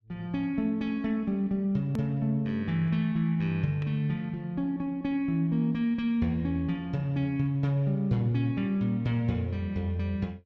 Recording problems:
click at an edit; at 2 s

